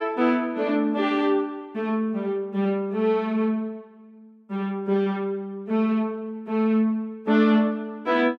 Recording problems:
none

